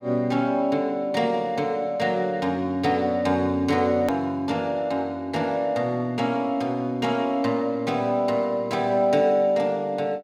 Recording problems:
click at an edit; at 4 s

